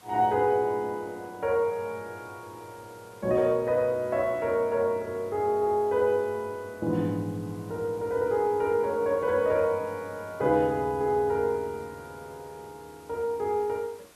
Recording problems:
background hiss; slope -3 dB per octave, SNR 27 dB

